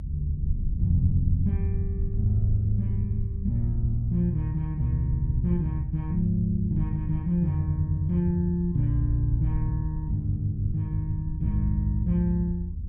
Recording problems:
low-frequency rumble; below 82 Hz, SNR 5 dB

